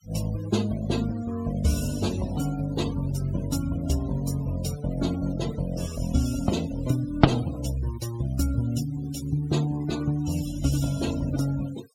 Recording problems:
denoising artefacts; signal-to-artefact ratio 15 dB

